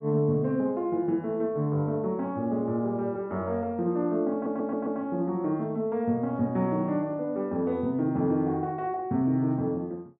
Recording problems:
audio stuttering; at 4.5 s

